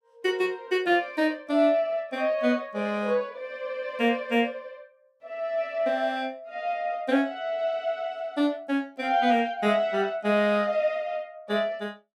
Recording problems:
none

